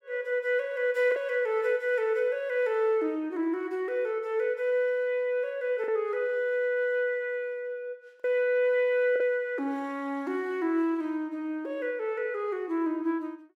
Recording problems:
packet loss; 1.2% of the sound replaced, filled with the last packet

